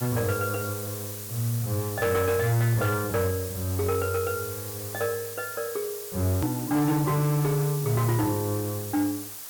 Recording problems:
distortion; hard clipping, signal-to-distortion ratio 12 dB
background hiss; slope 0 dB per octave, SNR 8 dB
hard cut with a click; at 6.5 s

